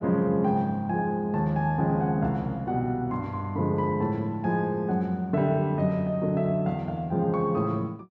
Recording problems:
none

